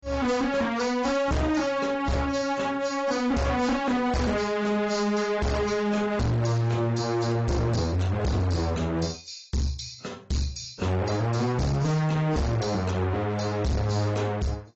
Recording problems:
codec artefacts; AAC, log-spectral distance 4 dB, nothing above 7.3 kHz
distortion; hard clipping, uneven, signal-to-distortion ratio 6 dB

